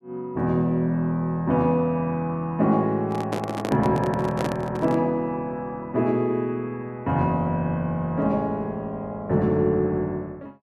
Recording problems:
handling noise; from 3 to 5 s; peak 0 dB vs average level

